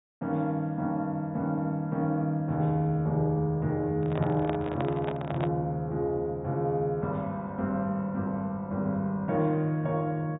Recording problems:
low-pass filter; nothing above 4 kHz
microphone handling noise; from 4 to 5.5 s; peak -1 dB vs average level

